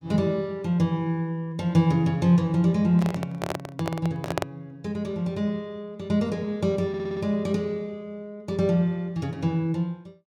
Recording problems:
handling noise; from 3 to 4.5 s; peak +3 dB vs average level
stutter; at 7 s

